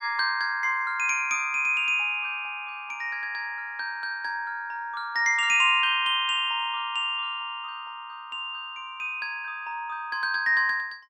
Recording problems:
none

